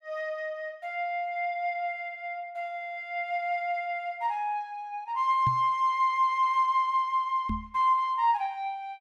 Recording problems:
knock on the microphone; at 5.5 s and at 7.5 s; peak 0 dB vs average level

